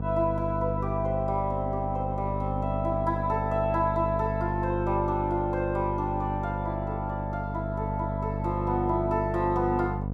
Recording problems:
hum; 50 Hz, harmonics up to 950 Hz, SNR 3 dB

